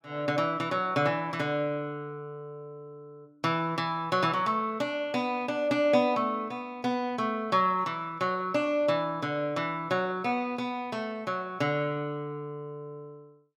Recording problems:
none

